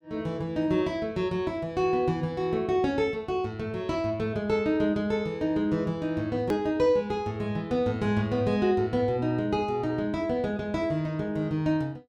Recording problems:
click at an edit; at 6.5 s

